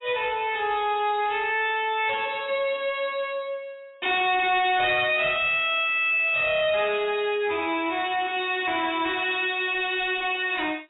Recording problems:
lossy codec; AAC, log-spectral distance 4 dB, nothing above 3.8 kHz
distorted audio; soft clipping, signal-to-distortion ratio 10 dB

